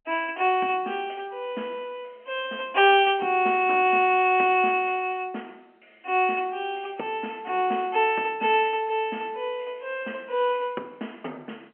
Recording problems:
phone line; 220 Hz to 3.2 kHz, G.711

